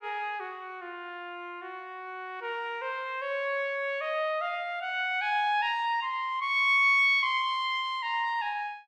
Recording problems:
none

